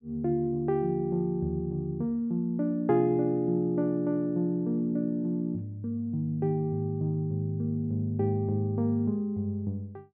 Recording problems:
treble cut off; nothing above 4 kHz

